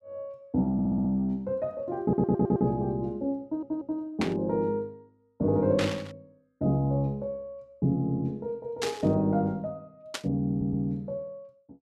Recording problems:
stutter; 4 times, first at 0.5 s
burst of static; 4 times, first at 4 s; peak +1 dB vs average level

